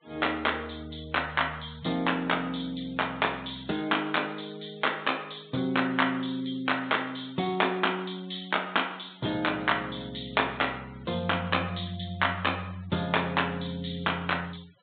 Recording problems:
treble missing; nothing above 4 kHz
noise reduction artefacts; signal-to-artefact ratio 25 dB

